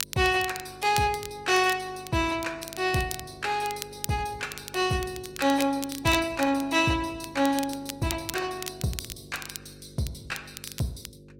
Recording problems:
lossy compression; Opus, log-spectral distance 4 dB, nothing above 16 kHz
hum; 50 Hz, harmonics up to 550 Hz, SNR 21 dB
crackling; vinyl, SNR 12 dB

